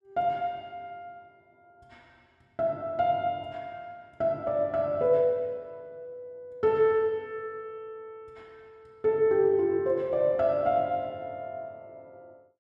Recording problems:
none

